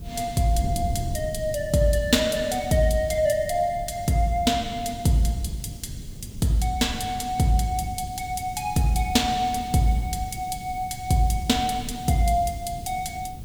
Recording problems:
hiss; slope +1 dB per octave, SNR 27 dB
wind noise; below 150 Hz, SNR 13 dB

